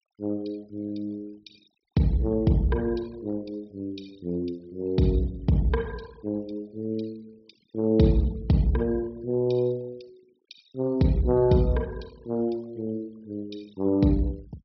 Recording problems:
treble missing; nothing above 5.5 kHz
noise reduction artefacts; signal-to-artefact ratio 28 dB

